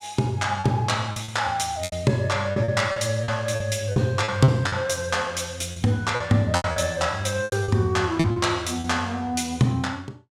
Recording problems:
lost packets; 10% of the sound replaced, filled with repeated pitch periods

